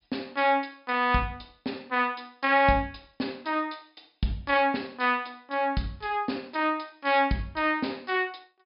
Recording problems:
low-pass filter; nothing above 5.5 kHz

